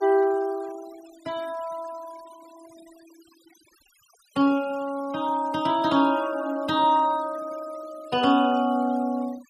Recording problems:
denoising artefacts; signal-to-artefact ratio 22 dB

